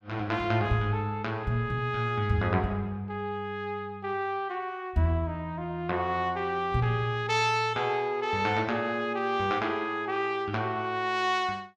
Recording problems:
none

